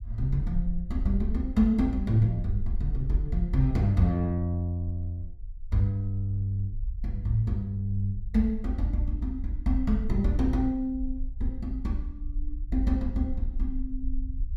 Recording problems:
low-frequency rumble; below 48 Hz, SNR 9 dB

